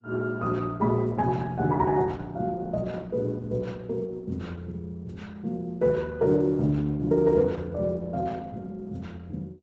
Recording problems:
lossy compression; Opus, log-spectral distance 2 dB, nothing above 7.8 kHz

